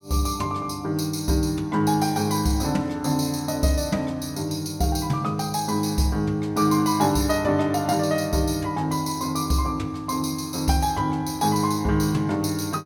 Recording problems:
none

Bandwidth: 17.5 kHz